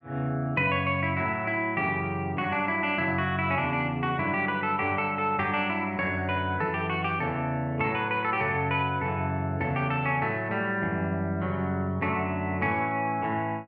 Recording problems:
none

